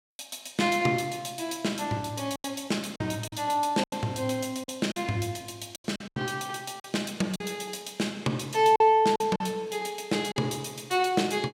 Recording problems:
lost packets; 7% of the sound replaced, filled with silence

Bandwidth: 16 kHz